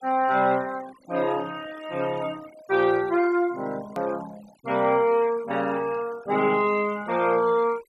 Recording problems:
denoising artefacts; signal-to-artefact ratio 21 dB
edit click; at 4 s

